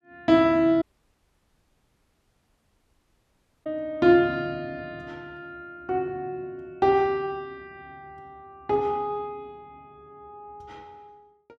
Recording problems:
audio cutting out; at 1 s for 3 s

